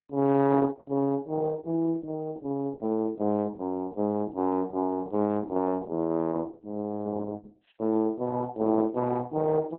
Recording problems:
codec artefacts; Opus, log-spectral distance 2 dB

